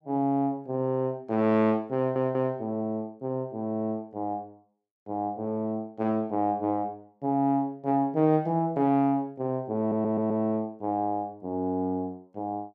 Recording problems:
stutter; at 2 s and at 10 s

